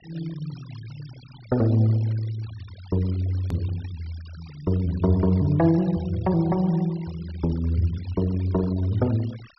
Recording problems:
treble cut off; nothing above 5.6 kHz
noise reduction artefacts; signal-to-artefact ratio 24 dB
edit click; at 3.5 s

